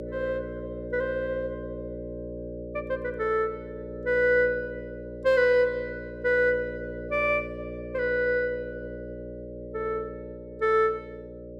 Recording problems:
hum; 60 Hz, harmonics up to 600 Hz, SNR 11 dB

